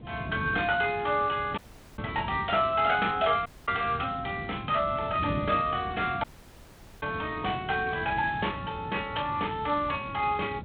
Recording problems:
phone line; 220 Hz to 3.7 kHz, G.726
wind noise; below 270 Hz, SNR 12 dB
dropout; at 1.5 s, at 3.5 s and at 6 s for 1 s

